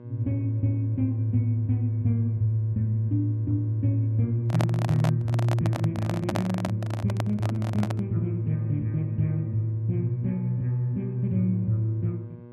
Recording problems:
electrical hum; 60 Hz, harmonics up to 1.1 kHz, SNR 20 dB
handling noise; from 4.5 to 8 s; peak +1 dB vs average level

